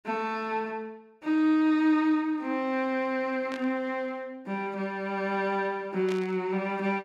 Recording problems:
burst of static; at 3.5 s and at 6 s; peak -8 dB vs average level

